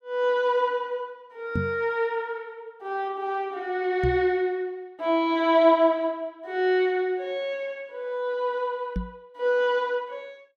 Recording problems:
knock on the microphone; at 1.5 s, at 4 s and at 9 s; peak +1 dB vs average level

